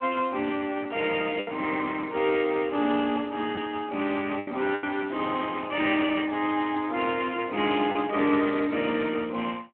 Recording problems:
phone line; 220 Hz to 3.3 kHz, Speex
packet loss; 3% of the sound replaced, filled with the last packet

